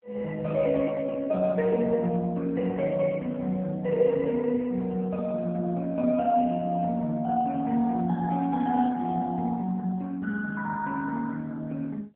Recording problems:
telephone audio; 220 Hz to 3.3 kHz, AMR-NB

